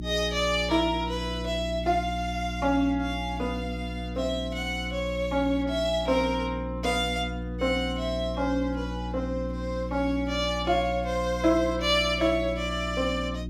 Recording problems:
hum; 60 Hz, harmonics up to 360 Hz, SNR 7 dB

